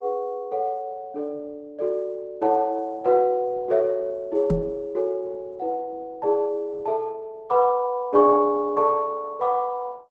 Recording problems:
lossy compression; Opus, then Opus, log-spectral distance 2 dB
knock on the microphone; at 4.5 s; peak +3 dB vs average level

